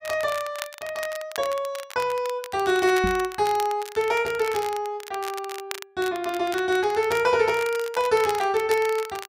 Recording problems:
crackle; vinyl, SNR 14 dB
microphone thump; at 3 s; peak -1 dB vs average level

